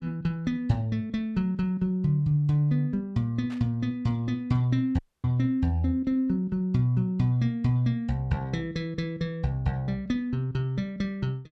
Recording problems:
burst of static; at 3.5 s; peak -14 dB vs average level
audio cutting out; at 5 s

